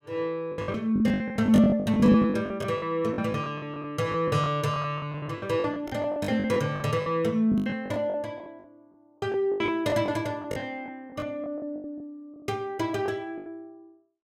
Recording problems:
packet loss; 18% of the sound replaced, filled with the last packet

